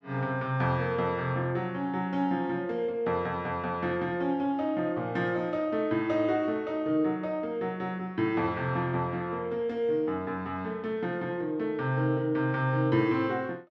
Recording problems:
none

